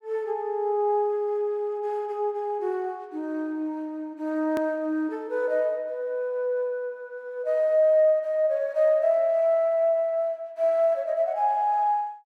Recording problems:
hard cut with a click; at 4.5 s

